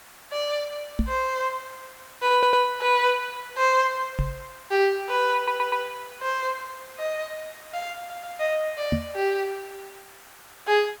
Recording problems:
background hiss; SNR 20 dB
microphone bump; at 1 s, at 4 s and at 9 s; peak +4 dB vs average level
stutter; at 2.5 s, at 5.5 s and at 8 s

